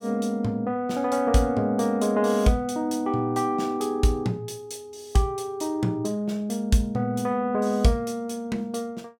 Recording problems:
none

